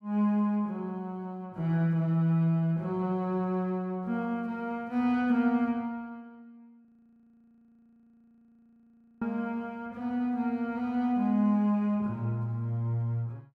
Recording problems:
audio freezing; at 7 s for 2.5 s

